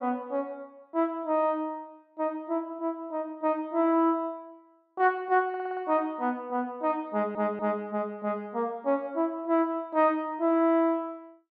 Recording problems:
stutter; at 5.5 s and at 7 s

